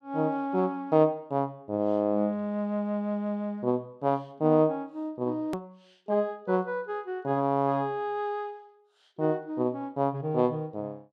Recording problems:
hard cut with a click; at 5.5 s

